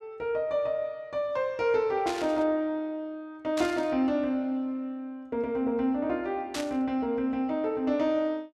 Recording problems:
static burst; at 2 s, at 3.5 s and at 6.5 s; peak -2 dB vs average level

